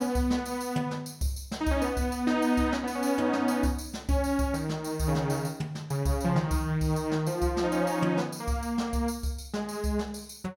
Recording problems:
none

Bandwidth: 16.5 kHz